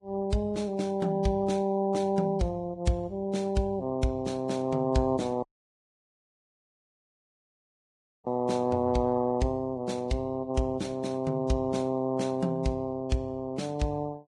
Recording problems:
lossy compression; Vorbis, log-spectral distance 2 dB, nothing above 10.4 kHz
audio cutting out; at 5.5 s for 3 s

